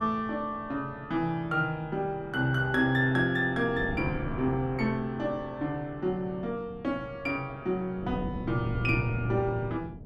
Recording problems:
wind noise; below 270 Hz, SNR 12 dB

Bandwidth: 13 kHz